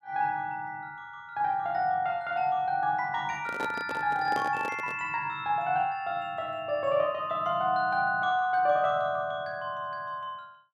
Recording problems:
microphone handling noise; from 3.5 to 5 s; peak -3 dB vs average level

